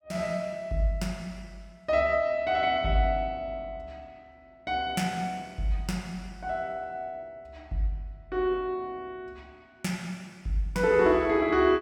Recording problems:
none

